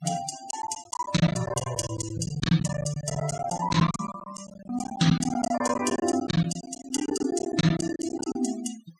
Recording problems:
noise reduction artefacts; signal-to-artefact ratio 14 dB
lost packets; 18% of the sound replaced, filled with silence

